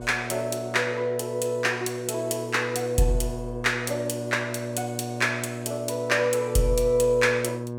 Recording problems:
hum; 60 Hz, harmonics up to 1.2 kHz, SNR 9 dB

